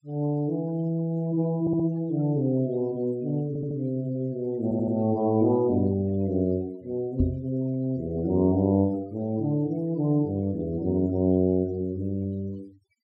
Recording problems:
noise reduction artefacts; signal-to-artefact ratio 26 dB
stutter; at 1.5 s, at 3.5 s and at 4.5 s
microphone thump; at 7 s; peak +5 dB vs average level

